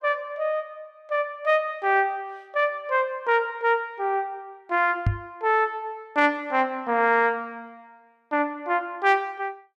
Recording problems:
microphone thump; at 5 s; peak +5 dB vs average level

